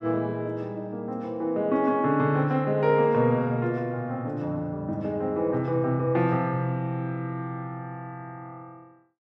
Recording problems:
none

